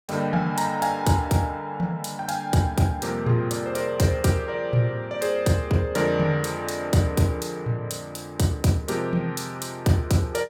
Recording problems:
none

